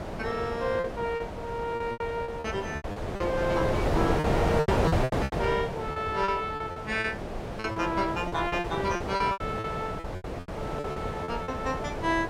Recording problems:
wind noise; below 750 Hz, SNR 1 dB
packet loss; 14% of the sound replaced, filled with repeated pitch periods

